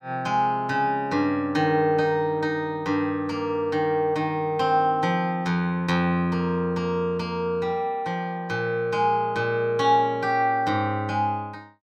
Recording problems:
none

